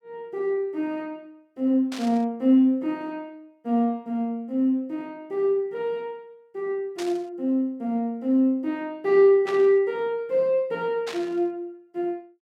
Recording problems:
burst of static; 4 times, first at 2 s; peak -7 dB vs average level

